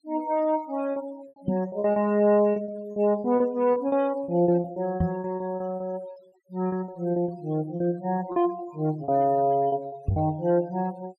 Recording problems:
denoising artefacts; signal-to-artefact ratio 23 dB
lost packets; 12% of the sound replaced, filled with repeated pitch periods
microphone bump; at 1.5 s, at 5 s and at 10 s; peak +4 dB vs average level

